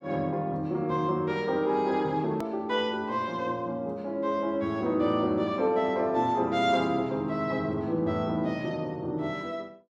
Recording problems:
click at an edit; at 2.5 s

